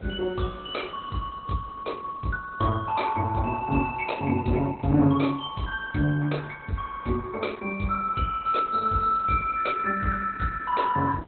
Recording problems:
lossy codec; Opus, log-spectral distance 4 dB, nothing above 4.1 kHz
background hiss; SNR 25 dB

